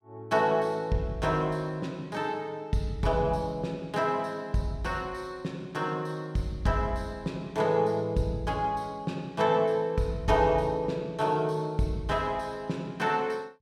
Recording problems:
none

